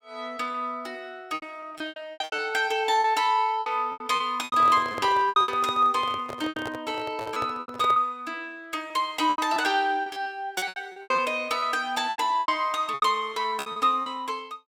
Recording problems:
packet loss; 15% of the sound replaced, filled with repeated pitch periods
microphone handling noise; from 4.5 to 8 s; peak -5 dB vs average level

